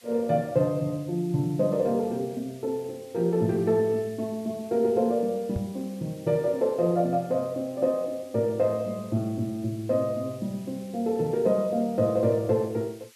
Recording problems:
hiss; SNR 25 dB
knock on the microphone; at 5.5 s; peak 0 dB vs average level

